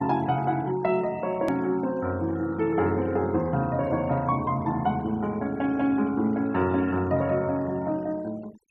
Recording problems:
denoising artefacts; signal-to-artefact ratio 23 dB
edit click; at 1.5 s

